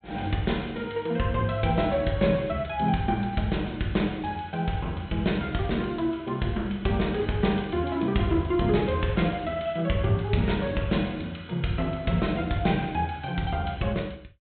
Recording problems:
treble cut off; nothing above 4 kHz

